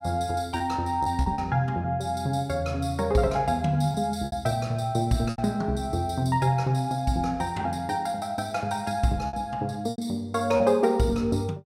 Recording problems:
packet loss; 4% of the sound replaced, filled with repeated pitch periods

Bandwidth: 16 kHz